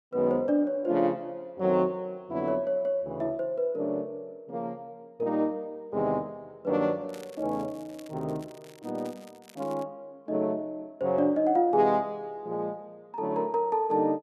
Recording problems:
crackling; from 7 to 10 s; loose cable, SNR 25 dB

